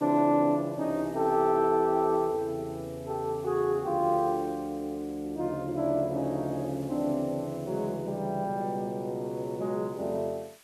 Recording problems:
hiss; slope +1 dB per octave, SNR 26 dB

